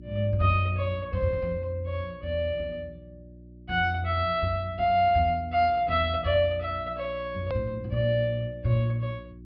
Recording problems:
low-pass filter; nothing above 5.5 kHz
mains hum; 60 Hz, harmonics up to 360 Hz, SNR 20 dB
edit click; at 7.5 s

